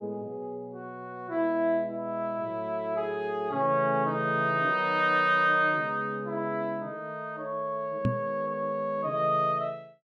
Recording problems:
microphone thump; at 8 s; peak +4 dB vs average level

